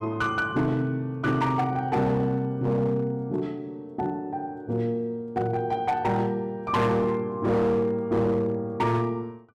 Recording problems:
distortion; hard clipping, signal-to-distortion ratio 11 dB

